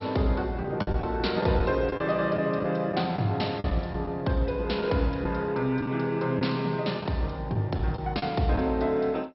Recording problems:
lossy codec; MP2, log-spectral distance 4 dB, nothing above 5.5 kHz
packet loss; 5% of the sound replaced, filled with the last packet

